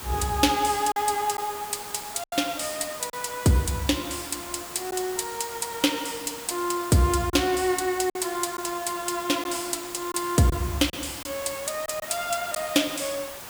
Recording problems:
hiss; SNR 11 dB
packet loss; 3% of the sound replaced, filled with silence

